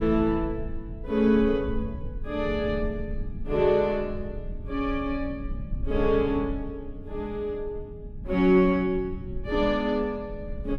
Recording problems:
low-frequency rumble; below 86 Hz, SNR 12 dB

